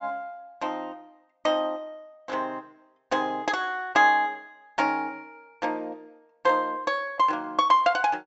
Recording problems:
treble missing; nothing above 8 kHz

